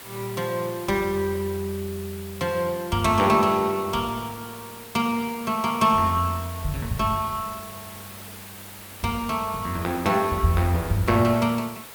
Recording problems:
background hiss; slope -2 dB per octave, SNR 15 dB

